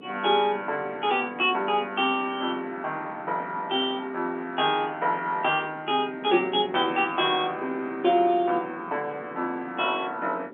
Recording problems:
telephone audio; 220 Hz to 3.3 kHz, G.711
wind on the microphone; below 460 Hz, SNR 18 dB

